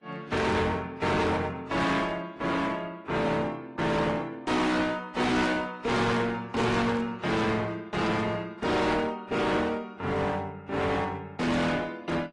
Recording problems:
codec artefacts; AAC, then AAC, log-spectral distance 3 dB, nothing above 10.4 kHz
distorted audio; hard clipping, uneven, signal-to-distortion ratio 5 dB

